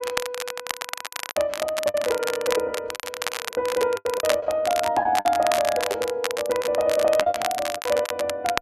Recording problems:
crackling; vinyl, SNR 7 dB
lost packets; 9% of the sound replaced, filled with the last packet

